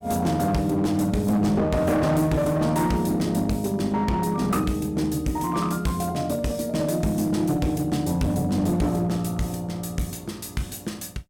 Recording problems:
distortion; hard clipping, uneven, signal-to-distortion ratio 10 dB

